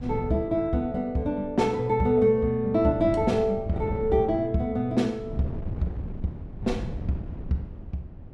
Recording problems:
wind noise; below 180 Hz, SNR 11 dB

